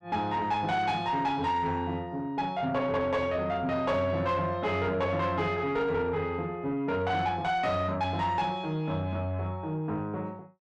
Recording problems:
distorted audio; soft clipping, signal-to-distortion ratio 11 dB

